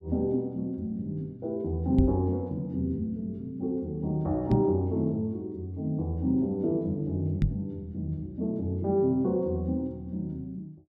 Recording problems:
microphone bump; at 2 s, at 4.5 s and at 7.5 s; peak +7 dB vs average level

